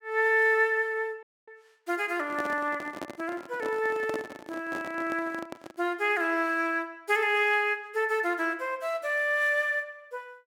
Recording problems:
audio cutting out; at 1 s
microphone handling noise; from 2 to 6 s; peak -4 dB vs average level

